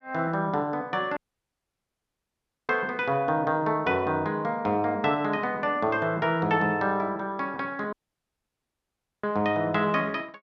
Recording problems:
audio cutting out; at 1 s for 1.5 s and at 8 s for 1.5 s

